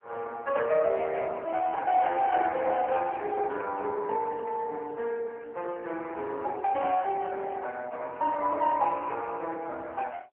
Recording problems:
telephone audio; 300 Hz to 3.2 kHz, AMR-NB

